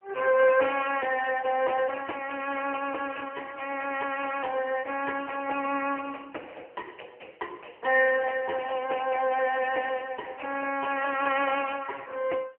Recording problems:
telephone audio; 300 Hz to 2.9 kHz, AMR-NB

